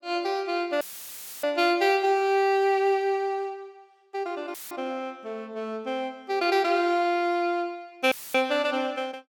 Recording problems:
audio cutting out; at 1 s for 0.5 s, at 4.5 s and at 8 s; filled with static

